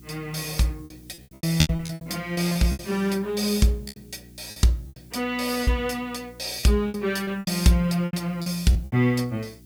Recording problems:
hum; 60 Hz, harmonics up to 360 Hz, SNR 24 dB
background hiss; slope +4 dB per octave, SNR 30 dB
packet loss; 13% of the sound replaced, filled with repeated pitch periods

